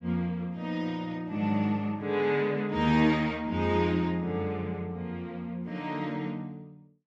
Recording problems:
none

